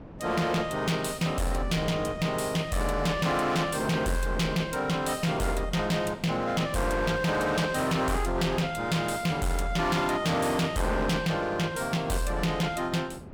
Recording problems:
distorted audio; hard clipping, signal-to-distortion ratio 8 dB
wind on the microphone; below 490 Hz, SNR 17 dB

